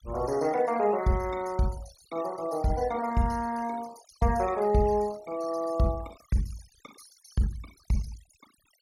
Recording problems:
denoising artefacts; signal-to-artefact ratio 17 dB

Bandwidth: 16.5 kHz